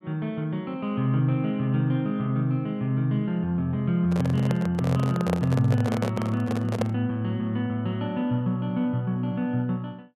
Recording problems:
handling noise; from 4 to 7 s; peak +2 dB vs average level

